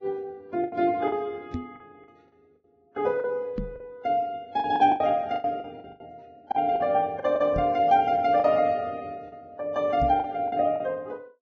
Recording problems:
codec artefacts; Vorbis, log-spectral distance 2 dB
packet loss; 10% of the sound replaced, filled with the last packet
microphone bump; 4 times, first at 1.5 s; peak -2 dB vs average level

